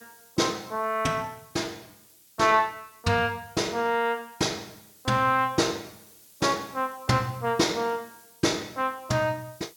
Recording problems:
background hiss; SNR 25 dB

